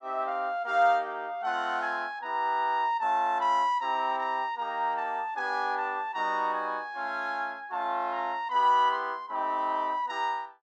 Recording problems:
none

